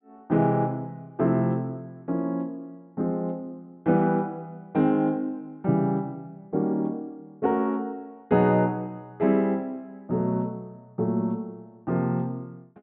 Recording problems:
low-pass filter; nothing above 4 kHz

